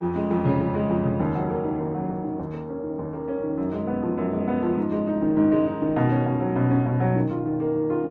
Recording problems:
codec artefacts; Opus, log-spectral distance 2 dB

